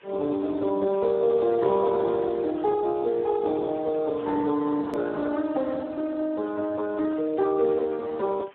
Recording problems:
telephone audio; 280 Hz to 2.1 kHz, Speex
background hiss; SNR 29 dB
edit click; at 5 s

